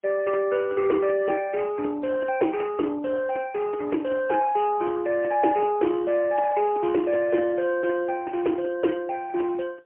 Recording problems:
telephone audio; 260 Hz to 2.2 kHz, AMR-NB, then MP3

